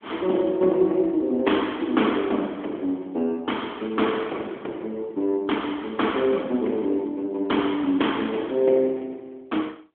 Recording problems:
phone line; 240 Hz to 3.4 kHz, AMR-NB

